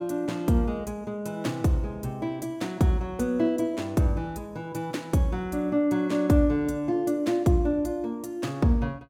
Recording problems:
none

